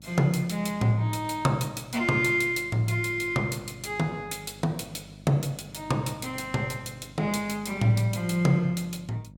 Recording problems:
hum; 50 Hz, harmonics up to 600 Hz, SNR 21 dB

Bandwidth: 18.5 kHz